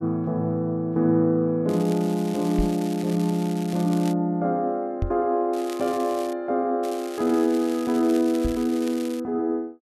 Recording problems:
crackling; from 1.5 to 4 s, at 5.5 s and from 7 to 9 s; loose cable, SNR 18 dB
knock on the microphone; at 2.5 s, at 5 s and at 8.5 s; peak +1 dB vs average level

